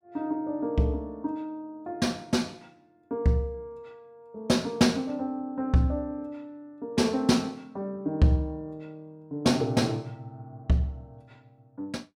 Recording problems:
none

